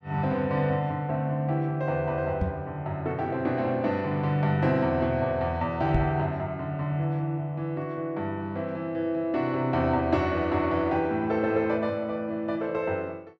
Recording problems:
knock on the microphone; at 2.5 s and at 6 s; peak +5 dB vs average level

